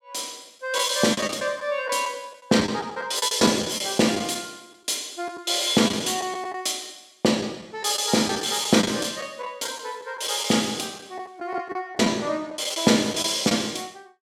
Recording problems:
packet loss; 7% of the sound replaced, filled with the last packet

